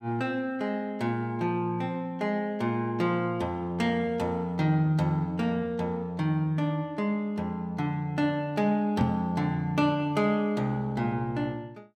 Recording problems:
microphone thump; at 9 s; peak +8 dB vs average level

